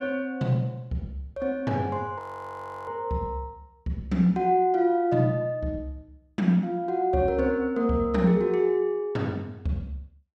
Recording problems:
frozen audio; at 2 s for 0.5 s

